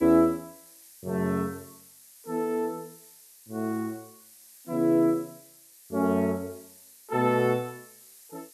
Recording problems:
background hiss; SNR 22 dB

